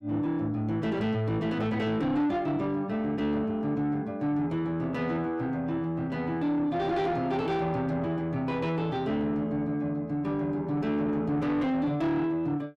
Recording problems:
distortion; soft clipping, signal-to-distortion ratio 11 dB

